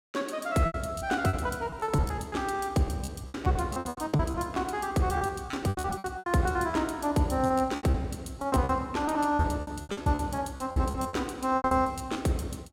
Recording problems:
packet loss; 19% of the sound replaced, filled with repeated pitch periods

